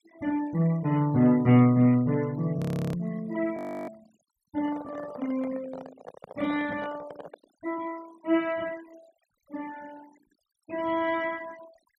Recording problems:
noise reduction artefacts; signal-to-artefact ratio 23 dB
audio freezing; at 2.5 s and at 3.5 s
microphone handling noise; from 4.5 to 7.5 s; peak -12 dB vs average level

